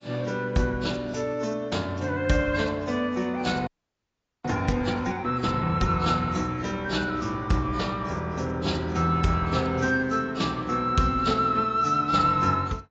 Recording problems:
lossy compression; AAC, log-spectral distance 3 dB, nothing above 7.3 kHz
audio freezing; at 3.5 s for 1 s

